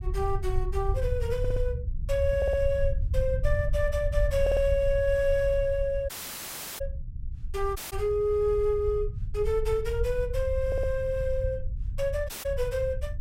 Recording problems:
rumble; below 76 Hz, SNR 5 dB
audio stuttering; 4 times, first at 1.5 s
dropout; at 6 s for 0.5 s, at 8 s and at 12 s

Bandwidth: 16 kHz